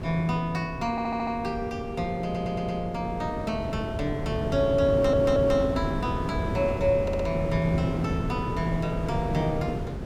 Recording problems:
wind noise; below 370 Hz, SNR 5 dB
audio stuttering; 4 times, first at 1 s

